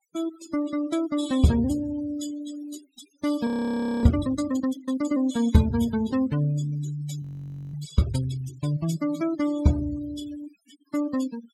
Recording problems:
denoising artefacts; signal-to-artefact ratio 16 dB
audio freezing; at 3.5 s for 0.5 s and at 7 s for 0.5 s

